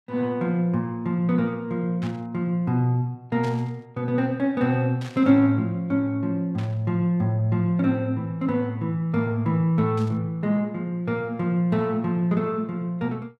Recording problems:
burst of static; 5 times, first at 2 s; peak -13 dB vs average level

